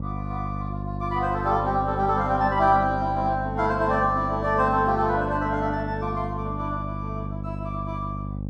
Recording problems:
hum; 50 Hz, harmonics up to 600 Hz, SNR 7 dB

